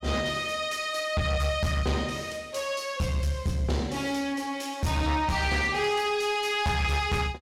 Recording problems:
distortion; soft clipping, signal-to-distortion ratio 10 dB

